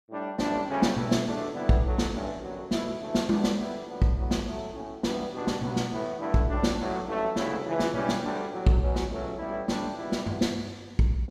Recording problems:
none

